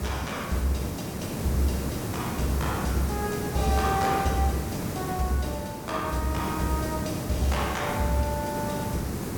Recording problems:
hiss; SNR 3 dB

